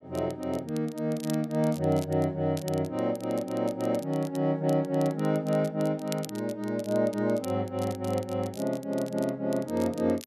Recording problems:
crackle; vinyl, SNR 19 dB

